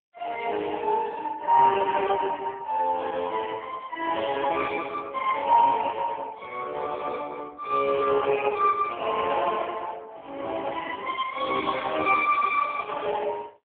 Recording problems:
telephone audio; 320 Hz to 3.3 kHz, AMR-NB

